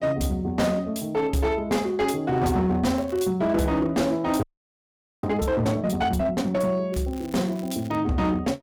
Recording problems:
distortion; hard clipping, uneven, signal-to-distortion ratio 11 dB
crackling; at 3 s and from 7 to 8 s; loose cable, SNR 24 dB
audio freezing; at 4.5 s for 1 s

